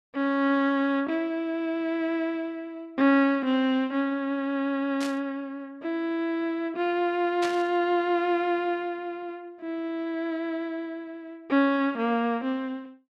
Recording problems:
burst of static; at 5 s and at 7.5 s; peak -4 dB vs average level

